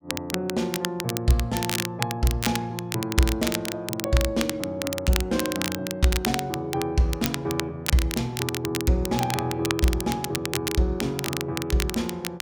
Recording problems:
crackle; vinyl, SNR 5 dB

